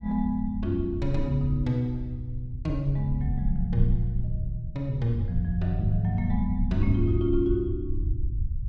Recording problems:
rumble; below 78 Hz, SNR 4 dB

